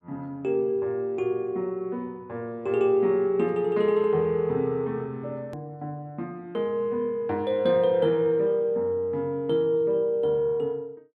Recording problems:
click at an edit; at 5.5 s

